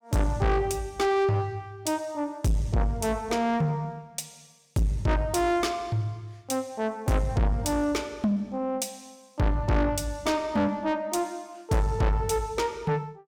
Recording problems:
distorted audio; soft clipping, signal-to-distortion ratio 7 dB

